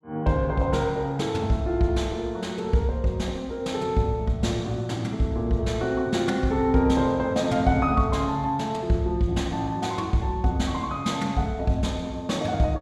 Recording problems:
none

